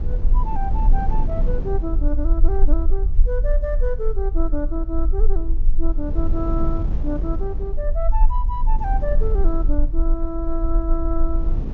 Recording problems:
low-pass filter; nothing above 7.1 kHz
low-frequency rumble; below 40 Hz, strongest tone 18 Hz, SNR -5 dB
wind noise; below 190 Hz, SNR 4 dB

